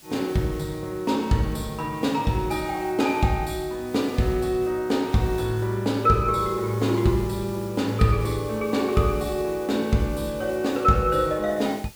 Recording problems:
hiss; slope 0 dB per octave, SNR 22 dB

